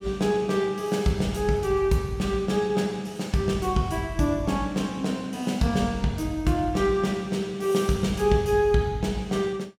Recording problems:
none

